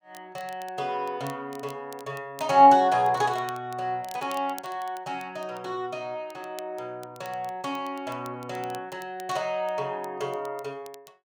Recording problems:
crackle; vinyl, SNR 23 dB

